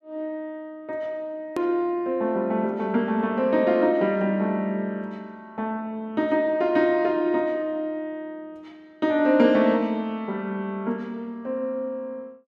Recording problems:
hard cut with a click; at 1.5 s

